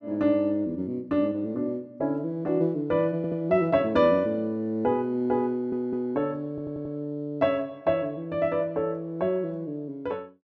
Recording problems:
audio stuttering; at 3 s, at 5.5 s and at 6.5 s

